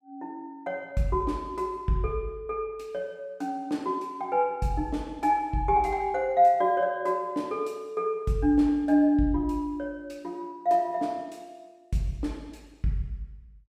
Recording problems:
none

